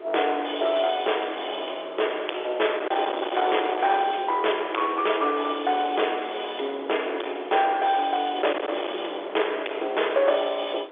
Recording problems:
telephone audio; 300 Hz to 3.6 kHz, G.711
distorted audio; hard clipping, uneven, signal-to-distortion ratio 7 dB
wind noise; below 1 kHz, SNR 11 dB

